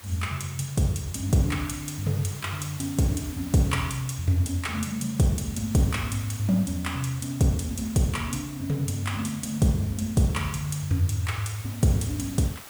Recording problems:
hiss; slope -2 dB per octave, SNR 16 dB

